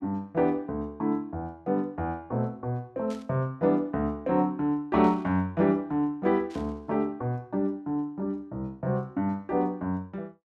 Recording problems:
static burst; at 3 s, at 5 s and at 6.5 s; peak -14 dB vs average level

